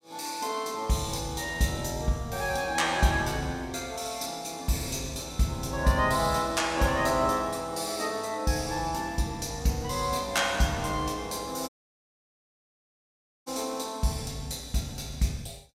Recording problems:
audio cutting out; at 12 s for 2 s

